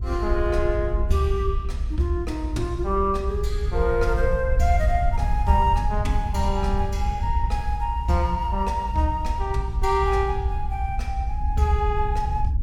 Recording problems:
low-frequency rumble; below 68 Hz, SNR 1 dB

